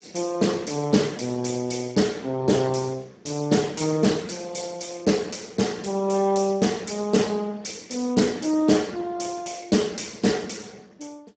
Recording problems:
codec artefacts; Speex, log-spectral distance 7 dB, nothing above 7.6 kHz

